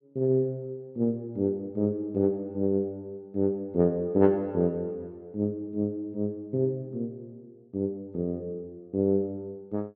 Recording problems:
none

